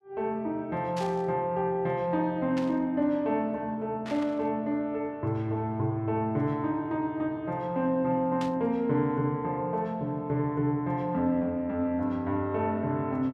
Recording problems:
static burst; 4 times, first at 1 s; peak -8 dB vs average level

